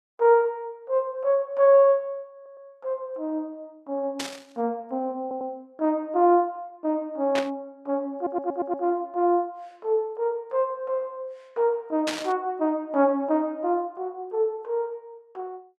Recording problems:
audio stuttering; at 2.5 s, at 5 s and at 8 s
static burst; at 4 s, at 7.5 s and at 12 s; peak 0 dB vs average level

